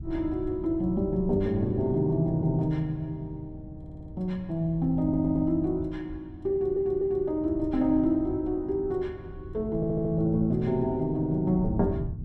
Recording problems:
wind noise; below 130 Hz, SNR 13 dB
stutter; 4 times, first at 4 s

